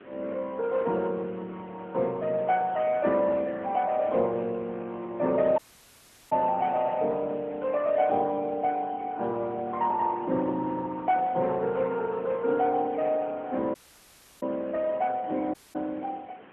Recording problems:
telephone audio; 220 Hz to 3.1 kHz, AMR-NB
background hiss; SNR 23 dB
audio cutting out; at 5.5 s for 0.5 s, at 14 s for 0.5 s and at 16 s

